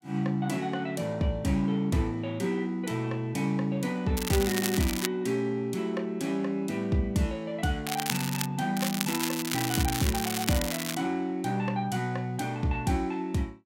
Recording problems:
crackling; at 4 s, at 8 s and from 9 to 11 s; loose cable, SNR 3 dB

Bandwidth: 16 kHz